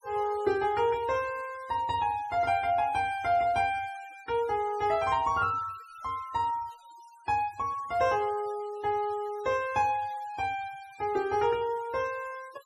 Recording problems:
denoising artefacts; signal-to-artefact ratio 22 dB

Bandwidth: 13.5 kHz